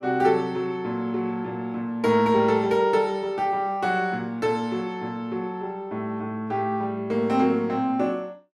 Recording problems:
none

